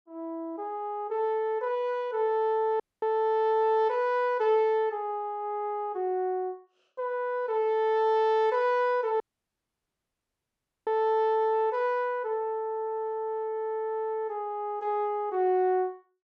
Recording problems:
dropout; at 3 s and at 9 s for 1.5 s

